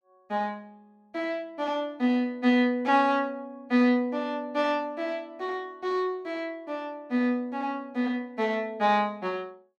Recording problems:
none

